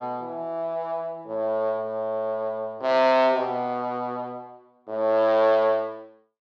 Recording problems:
none

